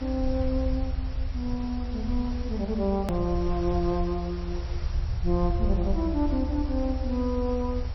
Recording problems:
codec artefacts; MP3, log-spectral distance 6 dB, nothing above 19.5 kHz
background hiss; slope -3 dB per octave, SNR 17 dB
rumble; below 74 Hz, SNR 2 dB
hard cut with a click; at 3 s

